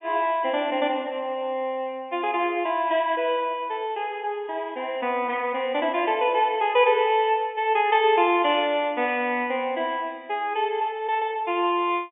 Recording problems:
treble missing; nothing above 3.5 kHz

